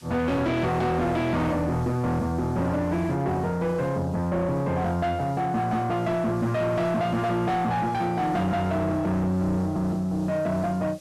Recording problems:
distortion; soft clipping, signal-to-distortion ratio 7 dB
hiss; slope +2 dB per octave, SNR 27 dB

